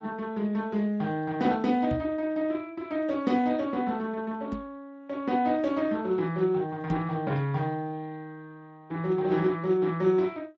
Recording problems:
lossy compression; Speex, log-spectral distance 2 dB
knock on the microphone; at 2 s, at 4.5 s and at 7 s; peak +1 dB vs average level

